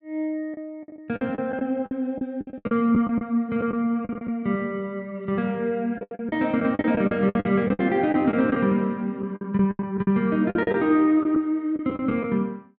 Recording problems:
packet loss; 14% of the sound replaced, filled with the last packet

